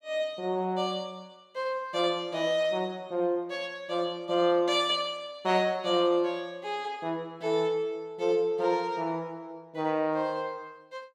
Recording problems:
none

